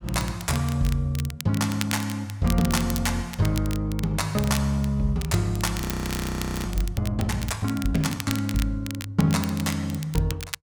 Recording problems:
crackling; vinyl, SNR 11 dB
audio freezing; at 6 s for 1 s

